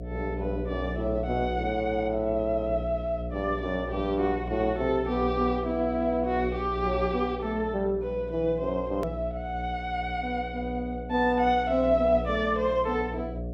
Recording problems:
electrical hum; 60 Hz, harmonics up to 720 Hz, SNR 9 dB
edit click; at 9 s

